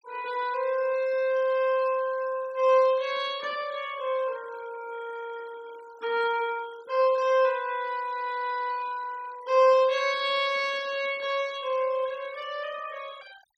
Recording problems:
noise reduction artefacts; signal-to-artefact ratio 22 dB

